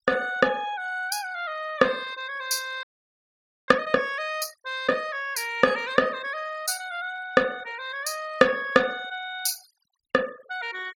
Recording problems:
denoising artefacts; signal-to-artefact ratio 22 dB
audio freezing; at 3 s for 1 s

